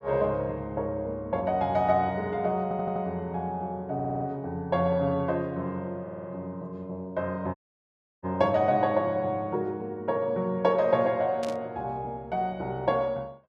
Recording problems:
audio stuttering; at 2.5 s, at 4 s and at 6 s
audio cutting out; at 7.5 s for 0.5 s
burst of static; at 11 s; peak -8 dB vs average level

